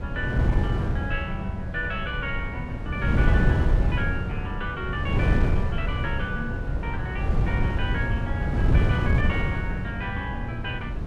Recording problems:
wind on the microphone; below 140 Hz, SNR -5 dB

